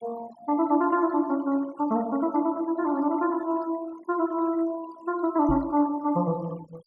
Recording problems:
denoising artefacts; signal-to-artefact ratio 22 dB
microphone bump; at 5.5 s; peak -2 dB vs average level

